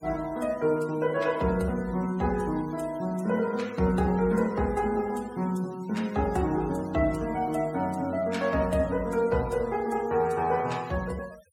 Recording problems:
noise reduction artefacts; signal-to-artefact ratio 22 dB

